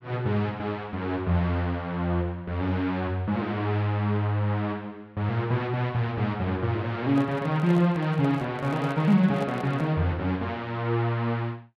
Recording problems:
microphone handling noise; from 7 to 10 s; peak -7 dB vs average level

